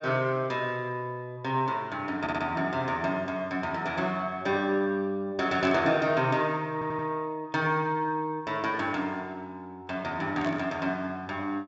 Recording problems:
low-pass filter; nothing above 8 kHz
stutter; at 2 s and at 6.5 s
static burst; at 5.5 s and at 10 s; peak -7 dB vs average level

